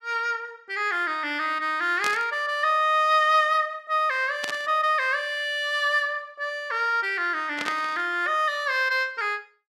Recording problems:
static burst; at 2 s, at 4.5 s and at 7.5 s; peak -2 dB vs average level

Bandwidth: 15 kHz